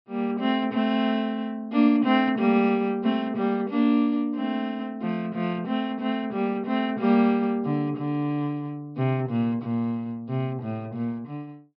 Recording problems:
low-pass filter; nothing above 5.5 kHz

